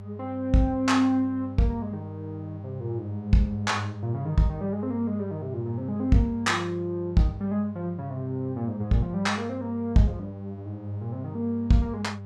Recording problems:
electrical hum; 50 Hz, harmonics up to 800 Hz, SNR 12 dB

